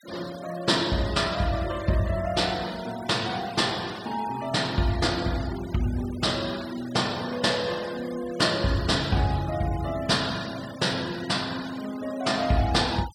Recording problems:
noise reduction artefacts; signal-to-artefact ratio 16 dB

